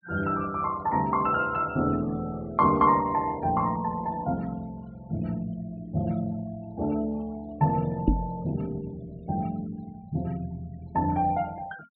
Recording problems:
low-pass filter; nothing above 4.2 kHz
denoising artefacts; signal-to-artefact ratio 25 dB
microphone thump; at 8 s; peak +9 dB vs average level

